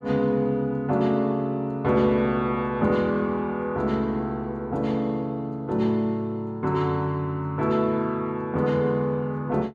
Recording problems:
none

